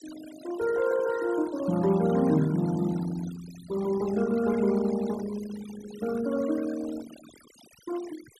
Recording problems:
denoising artefacts; signal-to-artefact ratio 17 dB

